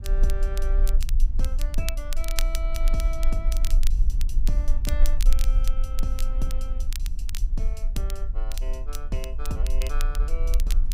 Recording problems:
rumble; below 38 Hz, strongest tone 20 Hz, SNR -9 dB
wind noise; below 120 Hz, SNR 12 dB
crackling; vinyl, SNR 4 dB

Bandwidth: 15.5 kHz